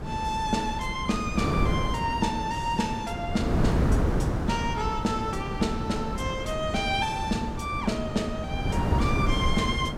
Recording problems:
wind on the microphone; below 310 Hz, SNR 1 dB

